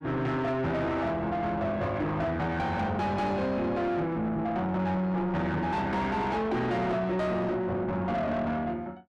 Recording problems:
distorted audio; soft clipping, signal-to-distortion ratio 7 dB

